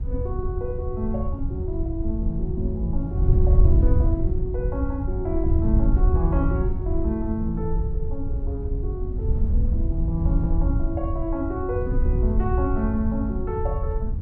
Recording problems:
wind on the microphone; below 84 Hz, SNR -4 dB

